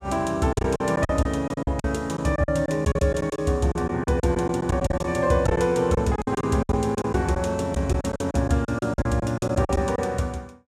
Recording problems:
packet loss; 14% of the sound replaced, filled with silence

